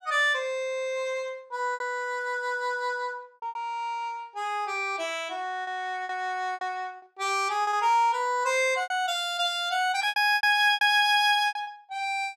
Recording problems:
packet loss; 8% of the sound replaced, filled with repeated pitch periods

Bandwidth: 14.5 kHz